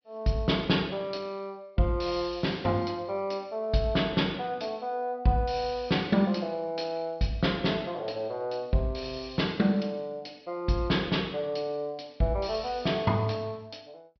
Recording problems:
treble missing; nothing above 5.5 kHz

